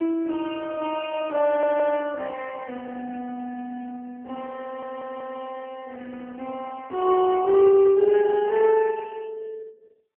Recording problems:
phone line; 280 Hz to 3.1 kHz, AMR-NB
stutter; at 1.5 s and at 4.5 s

